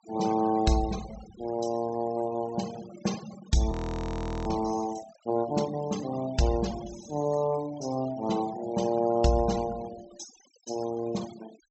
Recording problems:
treble cut off; nothing above 7.9 kHz
noise reduction artefacts; signal-to-artefact ratio 15 dB
audio freezing; at 3.5 s for 0.5 s

